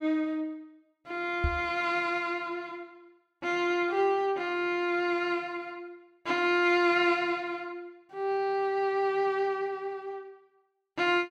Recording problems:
microphone bump; at 1.5 s; peak +2 dB vs average level

